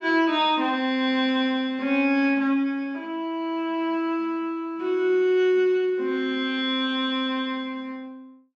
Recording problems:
treble cut off; nothing above 8 kHz

